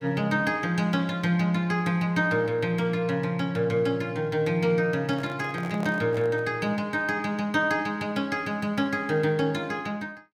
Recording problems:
microphone handling noise; from 5 to 6.5 s; peak -7 dB vs average level

